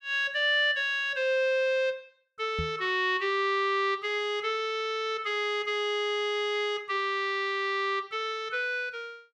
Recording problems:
microphone thump; at 2.5 s; peak -3 dB vs average level

